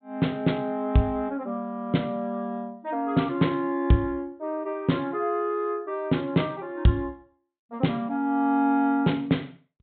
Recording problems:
low-pass filter; nothing above 4 kHz

